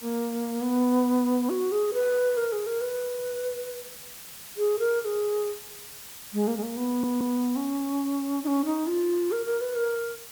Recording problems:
hiss; slope +1 dB per octave, SNR 13 dB
audio stuttering; at 7 s

